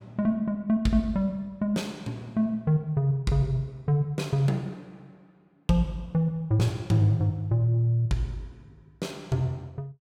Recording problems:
none

